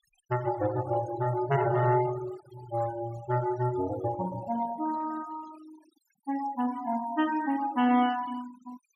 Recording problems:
denoising artefacts; signal-to-artefact ratio 16 dB

